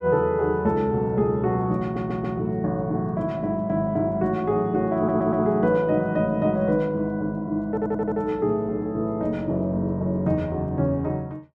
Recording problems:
audio stuttering; at 2 s, at 5 s and at 7.5 s

